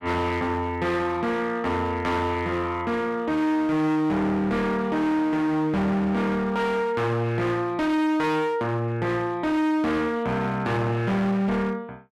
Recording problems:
distortion; hard clipping, signal-to-distortion ratio 8 dB

